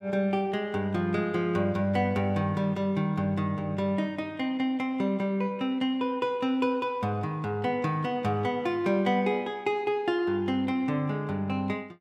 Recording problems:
none

